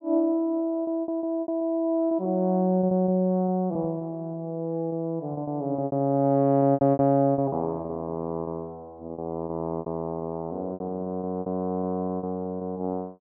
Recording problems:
packet loss; 13% of the sound replaced, filled with repeated pitch periods

